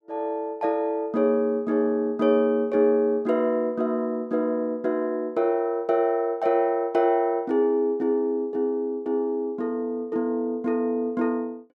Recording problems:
none

